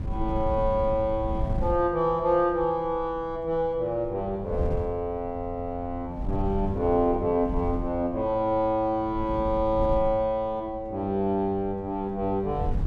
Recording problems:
wind on the microphone; below 110 Hz, SNR 10 dB

